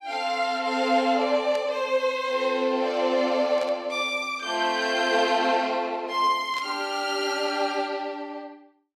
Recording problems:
burst of static; at 1.5 s, at 3.5 s and at 6.5 s; peak -10 dB vs average level

